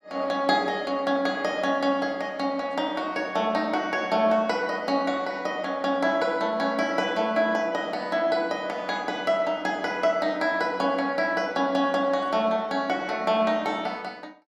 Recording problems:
none

